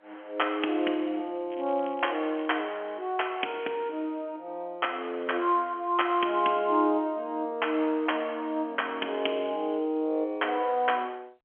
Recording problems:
telephone audio; 240 Hz to 3.3 kHz, G.711
crackle; from 1.5 to 3 s; loose cable, SNR 24 dB

